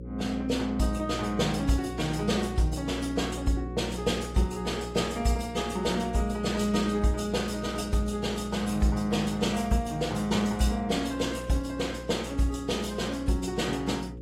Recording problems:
lossy compression; AAC, log-spectral distance 3 dB, nothing above 14.3 kHz
hum; 60 Hz, harmonics up to 540 Hz, SNR 11 dB

